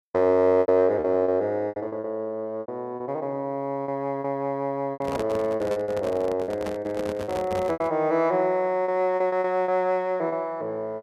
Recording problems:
lost packets; 10% of the sound replaced, filled with repeated pitch periods
handling noise; from 5 to 8 s; peak -3 dB vs average level

